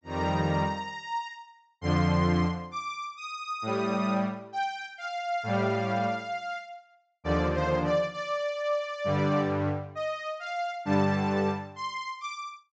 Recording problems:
treble missing; nothing above 8 kHz

